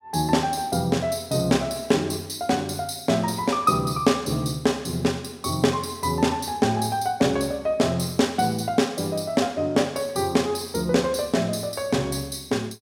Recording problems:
none

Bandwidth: 16.5 kHz